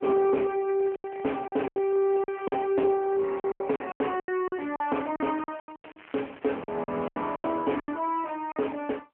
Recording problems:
telephone audio; 280 Hz to 3.2 kHz, AMR-NB
distortion; soft clipping, signal-to-distortion ratio 10 dB
lost packets; 15% of the sound replaced, filled with silence
crackling; from 0.5 to 2.5 s and from 5 to 7.5 s; loose cable, SNR 23 dB

